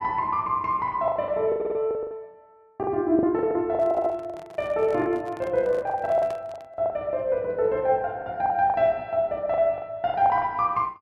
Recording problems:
lost packets; 13% of the sound replaced, filled with the last packet
audio stuttering; at 1.5 s and at 4 s
handling noise; from 3.5 to 7 s; peak -10 dB vs average level

